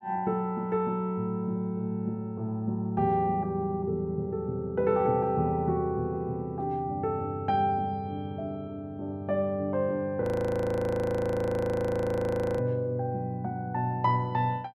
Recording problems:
frozen audio; at 10 s for 2.5 s

